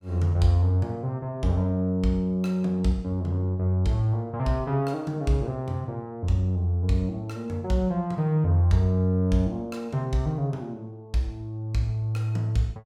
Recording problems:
none

